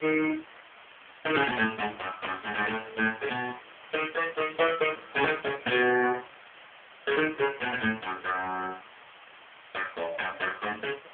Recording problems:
telephone audio; 320 Hz to 3.2 kHz, AMR-NB
hiss; SNR 20 dB

